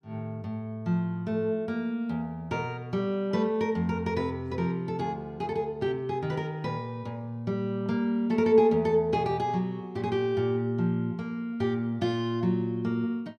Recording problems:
none

